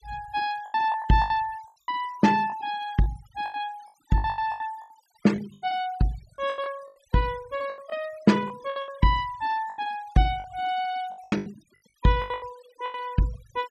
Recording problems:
noise reduction artefacts; signal-to-artefact ratio 19 dB
lost packets; 14% of the sound replaced, filled with the last packet

